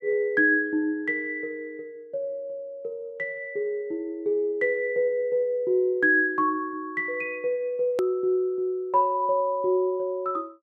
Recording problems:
edit click; at 8 s

